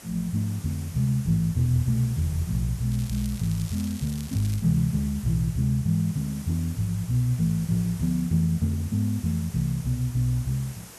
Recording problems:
hiss; SNR 18 dB
crackling; from 3 to 4.5 s; loose cable, SNR 18 dB

